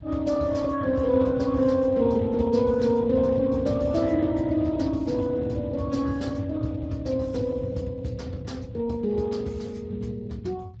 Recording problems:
lossy codec; Speex, log-spectral distance 3 dB
low-frequency rumble; below 130 Hz, SNR 11 dB

